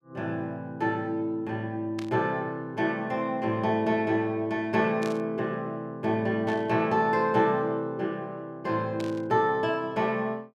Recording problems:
static burst; 4 times, first at 2 s; peak -9 dB vs average level

